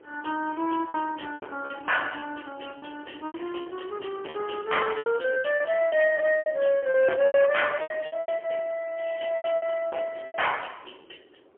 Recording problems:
phone line; 280 Hz to 3.2 kHz, AMR-NB, then MP3
distortion; hard clipping, signal-to-distortion ratio 9 dB
wind on the microphone; below 790 Hz, SNR 23 dB
lost packets; 13% of the sound replaced, filled with repeated pitch periods

